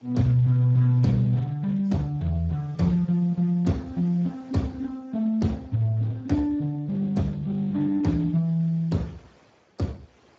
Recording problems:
codec artefacts; AAC, then Speex, log-spectral distance 2 dB, nothing above 17.1 kHz
wind on the microphone; below 2 kHz, SNR 33 dB

